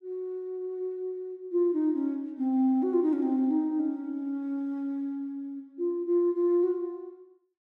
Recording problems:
none

